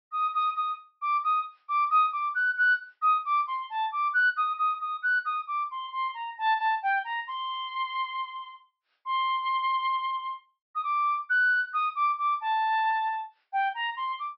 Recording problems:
treble missing; nothing above 5.5 kHz

